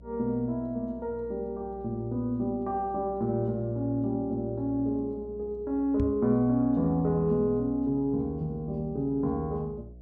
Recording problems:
hum; 60 Hz, harmonics up to 660 Hz, SNR 19 dB
microphone bump; at 6 s; peak 0 dB vs average level

